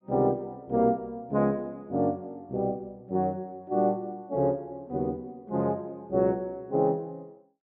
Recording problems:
none

